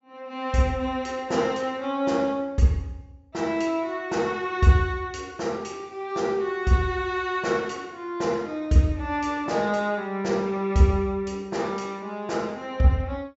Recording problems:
treble missing; nothing above 8 kHz

